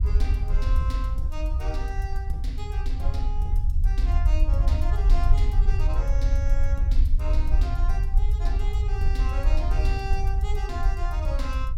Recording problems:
rumble; below 62 Hz, SNR -11 dB

